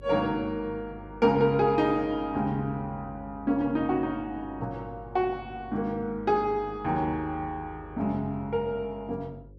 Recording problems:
mains hum; 50 Hz, harmonics up to 550 Hz, SNR 19 dB

